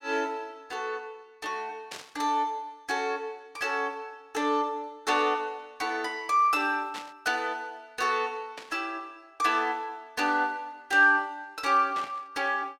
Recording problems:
static burst; 4 times, first at 2 s; peak -7 dB vs average level

